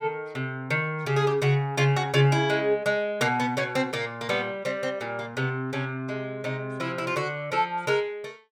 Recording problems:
none

